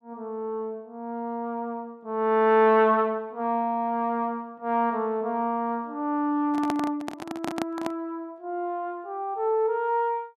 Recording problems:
microphone handling noise; from 6.5 to 8 s; peak 0 dB vs average level

